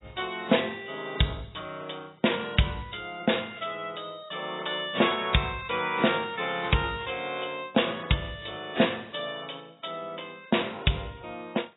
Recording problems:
lossy compression; AAC, log-spectral distance 9 dB, nothing above 3.8 kHz

